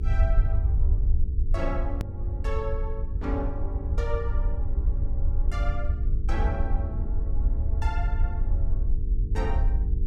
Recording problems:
hum; 50 Hz, harmonics up to 450 Hz, SNR 6 dB
rumble; below 68 Hz, SNR -8 dB
click at an edit; at 2 s

